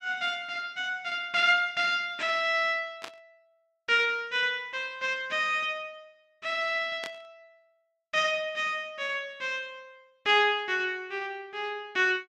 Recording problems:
static burst; at 3 s and at 7 s; peak -7 dB vs average level

